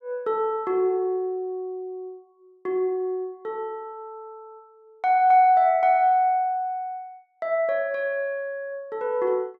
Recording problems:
none

